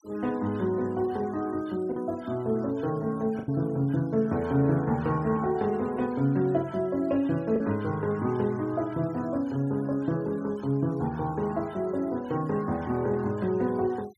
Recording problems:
noise reduction artefacts; signal-to-artefact ratio 26 dB
packet loss; 1.1% of the sound replaced, filled with the last packet

